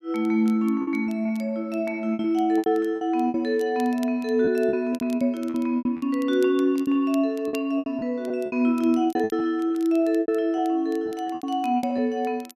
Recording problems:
crackling; vinyl, SNR 27 dB
packet loss; 13% of the sound replaced, filled with repeated pitch periods

